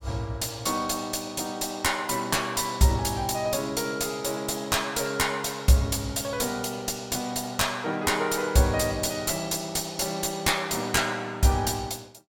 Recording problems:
distorted audio; soft clipping, signal-to-distortion ratio 10 dB

